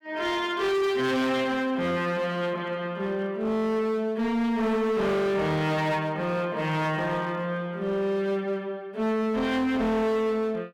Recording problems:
distorted audio; hard clipping, signal-to-distortion ratio 7 dB

